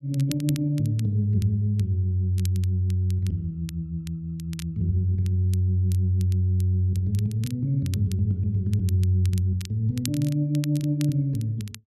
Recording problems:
crackling; vinyl, SNR 20 dB

